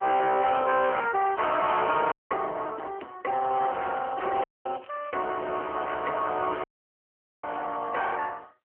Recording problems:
phone line; 260 Hz to 3.3 kHz, AMR-NB
distorted audio; hard clipping, signal-to-distortion ratio 11 dB
audio cutting out; at 2 s, at 4.5 s and at 6.5 s for 1 s
crackle; from 3.5 to 5.5 s and from 6.5 to 8 s; loose cable, SNR 29 dB

